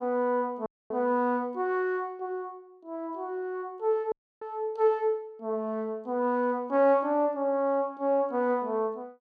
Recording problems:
audio cutting out; at 0.5 s and at 4 s

